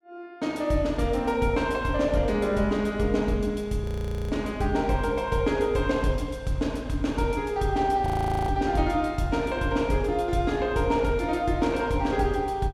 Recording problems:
frozen audio; at 4 s and at 8 s

